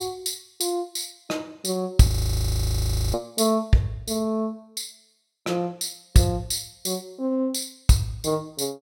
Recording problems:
frozen audio; at 2 s for 1 s

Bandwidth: 16.5 kHz